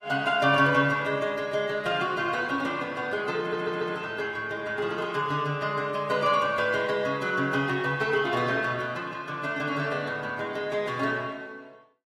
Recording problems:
codec artefacts; AAC, log-spectral distance 2 dB, nothing above 13.8 kHz
stutter; at 3.5 s

